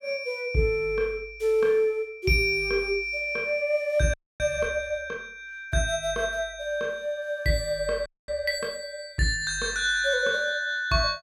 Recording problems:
frozen audio; at 4 s and at 8 s

